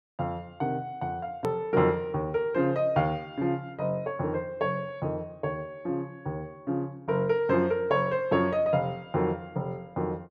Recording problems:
click at an edit; at 1.5 s

